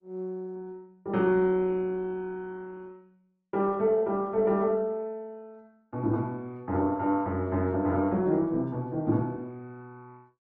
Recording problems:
codec artefacts; Opus, log-spectral distance 2 dB

